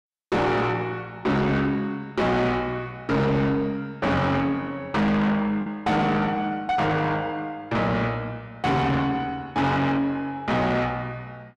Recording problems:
distortion; soft clipping, signal-to-distortion ratio 7 dB
lost packets; 0.4% of the sound replaced, filled with the last packet

